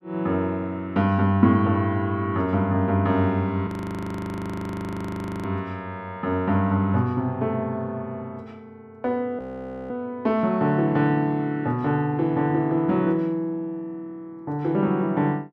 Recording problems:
frozen audio; at 3.5 s for 2 s and at 9.5 s for 0.5 s

